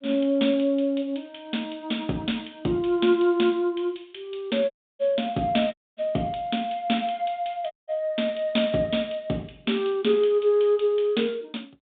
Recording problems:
phone line; 130 Hz to 3.7 kHz, G.726
audio cutting out; at 4.5 s, at 5.5 s and at 7.5 s

